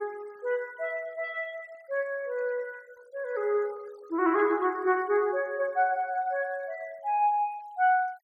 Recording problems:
noise reduction artefacts; signal-to-artefact ratio 28 dB

